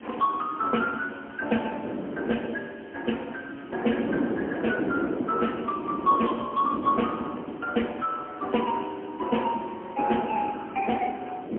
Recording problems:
telephone audio; 190 Hz to 3.1 kHz, AMR-NB, then MP3
background hiss; SNR 27 dB
wind on the microphone; below 450 Hz, SNR 5 dB

